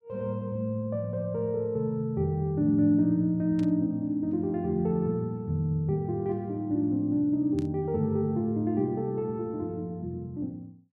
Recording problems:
burst of static; at 3.5 s and at 7.5 s; peak -17 dB vs average level

